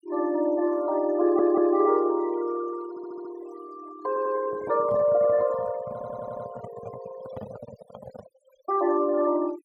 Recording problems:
denoising artefacts; signal-to-artefact ratio 20 dB
audio stuttering; 4 times, first at 1 s
handling noise; from 4.5 to 8.5 s; peak -8 dB vs average level

